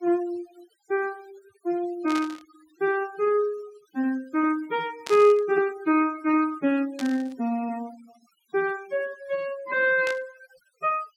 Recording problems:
denoising artefacts; signal-to-artefact ratio 22 dB
static burst; 4 times, first at 2 s; peak -5 dB vs average level

